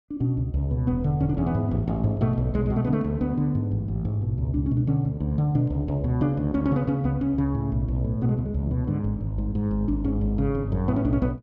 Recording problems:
none

